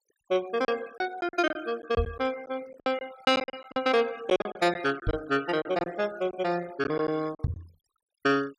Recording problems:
noise reduction artefacts; signal-to-artefact ratio 19 dB
lost packets; 11% of the sound replaced, filled with silence
microphone bump; at 2 s, at 5 s and at 7.5 s; peak +4 dB vs average level

